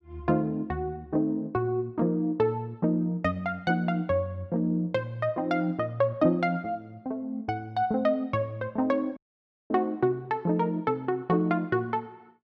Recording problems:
audio cutting out; at 9 s for 0.5 s

